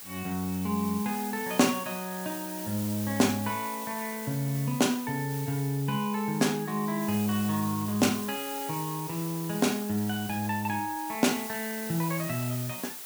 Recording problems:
hiss; slope 0 dB per octave, SNR 8 dB

